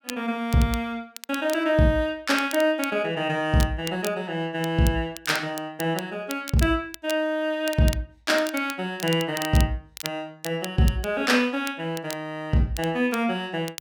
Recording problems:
crackle; vinyl, SNR 14 dB

